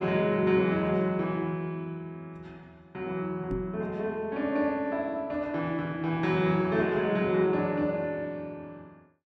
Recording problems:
knock on the microphone; at 3.5 s; peak -2 dB vs average level

